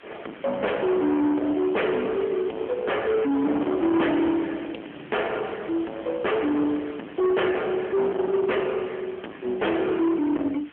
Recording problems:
phone line; 220 Hz to 3.3 kHz, AMR-NB
distorted audio; soft clipping, signal-to-distortion ratio 6 dB
background hiss; SNR 22 dB

